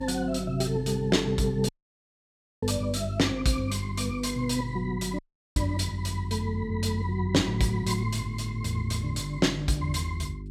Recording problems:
electrical hum; 50 Hz, harmonics up to 400 Hz, SNR 11 dB
audio cutting out; at 1.5 s for 1 s and at 5 s

